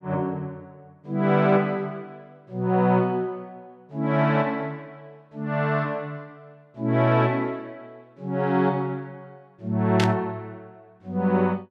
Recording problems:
burst of static; at 10 s; peak +2 dB vs average level

